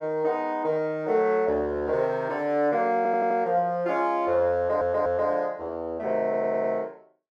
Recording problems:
audio stuttering; at 3 s, at 4.5 s and at 6 s

